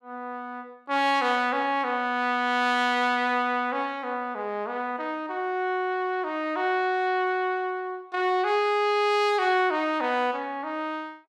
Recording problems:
none

